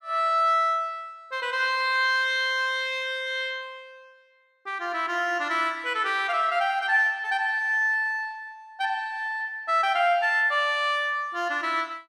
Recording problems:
none

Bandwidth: 14 kHz